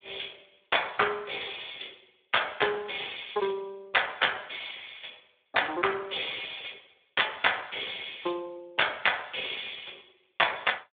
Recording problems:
telephone audio; 320 Hz to 3.6 kHz, Speex

